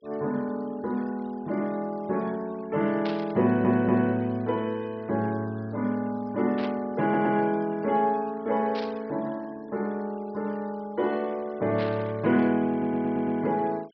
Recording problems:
low-pass filter; nothing above 5.5 kHz
denoising artefacts; signal-to-artefact ratio 27 dB
burst of static; 4 times, first at 3 s; peak -7 dB vs average level
stutter; at 3.5 s, at 7 s and at 13 s

